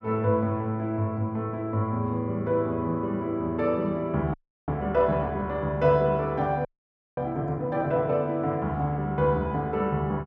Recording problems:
audio freezing; at 4.5 s and at 6.5 s for 0.5 s

